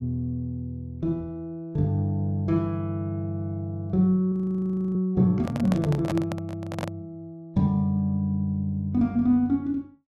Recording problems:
audio freezing; at 4.5 s for 0.5 s
handling noise; from 5.5 to 7 s; peak -1 dB vs average level

